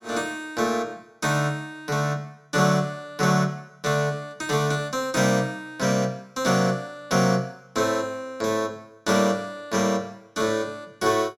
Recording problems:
none

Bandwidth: 17 kHz